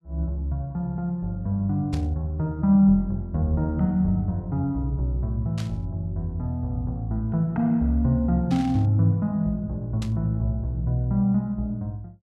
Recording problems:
burst of static; 4 times, first at 2 s; peak -10 dB vs average level

